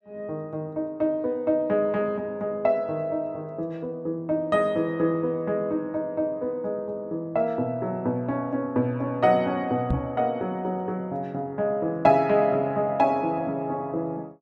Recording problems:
microphone bump; at 10 s; peak +4 dB vs average level

